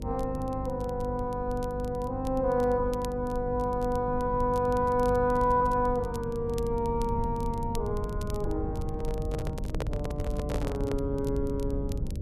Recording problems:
hum; 50 Hz, harmonics up to 600 Hz, SNR 9 dB
rumble; below 100 Hz, SNR 8 dB
crackling; vinyl, SNR 23 dB
handling noise; from 9 to 11 s; peak +1 dB vs average level

